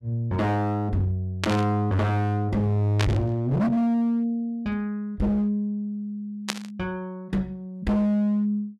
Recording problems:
distortion; hard clipping, signal-to-distortion ratio 7 dB
burst of static; at 1.5 s, at 3 s and at 6.5 s; peak +3 dB vs average level

